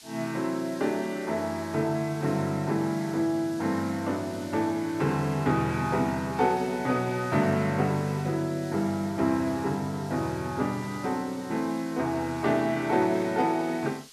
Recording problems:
hiss; SNR 20 dB

